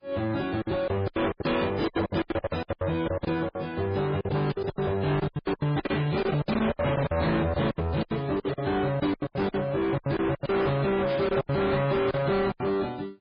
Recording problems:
codec artefacts; AAC, then MP3, log-spectral distance 3 dB, nothing above 5 kHz
distorted audio; soft clipping, signal-to-distortion ratio 6 dB
packet loss; 20% of the sound replaced, filled with silence
static burst; 5 times, first at 1.5 s; peak -10 dB vs average level

